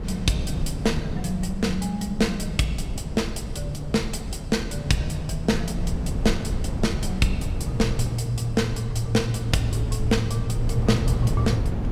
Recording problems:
wind on the microphone; below 150 Hz, SNR 4 dB

